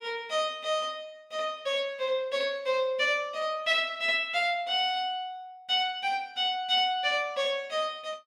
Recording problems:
none

